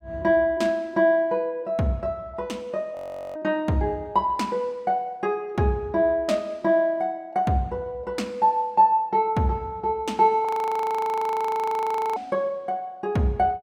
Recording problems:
audio freezing; at 3 s and at 10 s for 1.5 s

